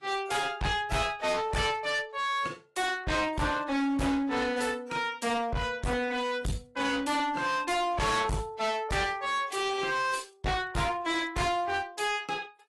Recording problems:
lossy compression; AAC, log-spectral distance 3 dB, nothing above 11.3 kHz
distorted audio; hard clipping, uneven, signal-to-distortion ratio 6 dB

